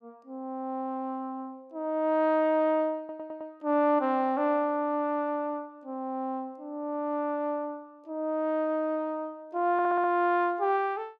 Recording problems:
audio stuttering; at 3 s and at 9.5 s

